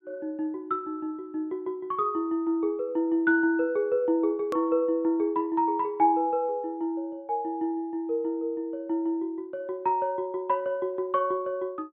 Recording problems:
treble cut off; nothing above 4 kHz
hard cut with a click; at 4.5 s

